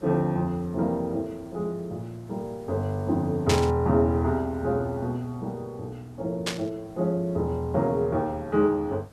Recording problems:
background hiss; slope -6 dB per octave, SNR 24 dB
static burst; at 3.5 s and at 6.5 s; peak +4 dB vs average level

